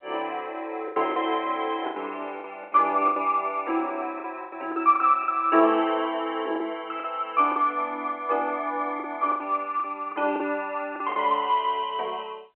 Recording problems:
phone line; 340 Hz to 3.1 kHz, G.711
lost packets; 9% of the sound replaced, filled with the last packet

